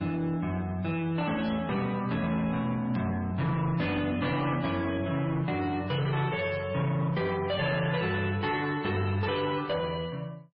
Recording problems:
lossy codec; MP3, log-spectral distance 2 dB
distortion; soft clipping, signal-to-distortion ratio 11 dB
burst of static; 4 times, first at 1.5 s; peak -14 dB vs average level

